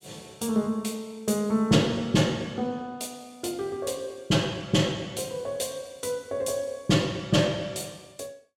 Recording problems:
none

